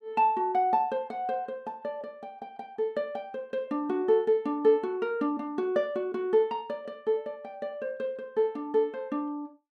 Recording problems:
none

